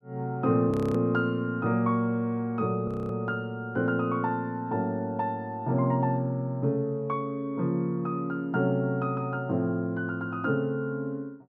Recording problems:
audio freezing; at 0.5 s and at 3 s

